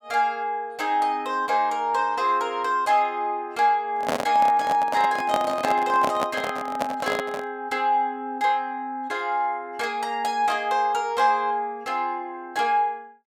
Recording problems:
microphone handling noise; from 4 to 7.5 s; peak +2 dB vs average level

